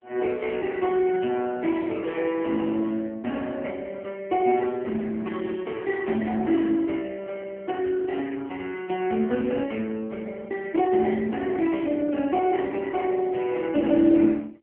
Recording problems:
telephone audio; 190 Hz to 3.3 kHz, AMR-NB

